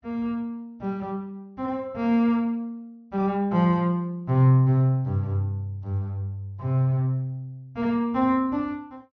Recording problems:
low-pass filter; nothing above 6.3 kHz

